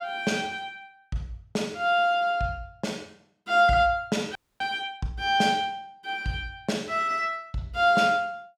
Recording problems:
audio freezing; at 4.5 s

